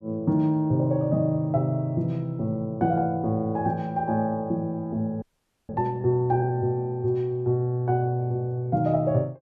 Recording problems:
audio freezing; at 5 s

